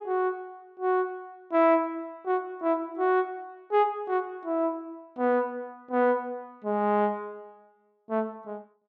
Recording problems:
none

